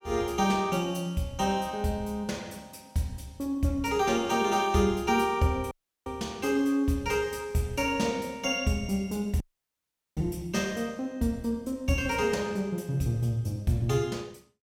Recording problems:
audio cutting out; at 5.5 s and at 9.5 s for 1 s

